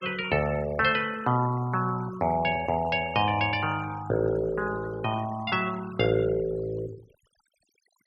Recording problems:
noise reduction artefacts; signal-to-artefact ratio 18 dB

